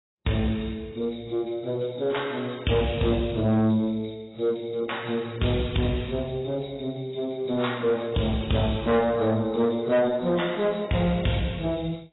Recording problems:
codec artefacts; AAC, then AAC, log-spectral distance 9 dB, nothing above 3.8 kHz
distortion; soft clipping, signal-to-distortion ratio 11 dB

